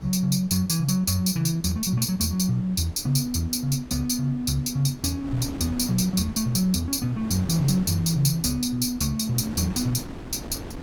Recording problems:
wind on the microphone; below 380 Hz, SNR 15 dB

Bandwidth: 17.5 kHz